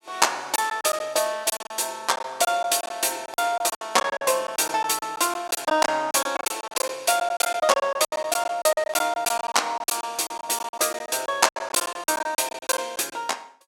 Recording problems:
packet loss; 16% of the sound replaced, filled with silence

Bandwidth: 17 kHz